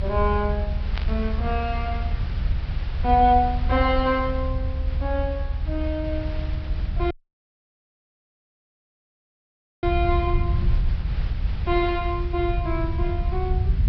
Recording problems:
treble cut off; nothing above 5.5 kHz
hiss; SNR 17 dB
rumble; below 74 Hz, SNR 1 dB
static burst; at 1 s; peak -4 dB vs average level
audio cutting out; at 7 s for 2.5 s

